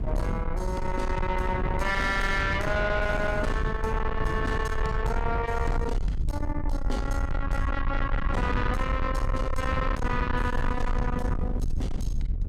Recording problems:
distortion; soft clipping, signal-to-distortion ratio 8 dB
rumble; below 80 Hz, SNR 3 dB
wind on the microphone; below 290 Hz, SNR 6 dB

